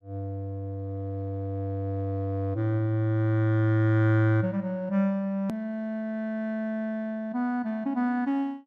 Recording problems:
click at an edit; at 5.5 s

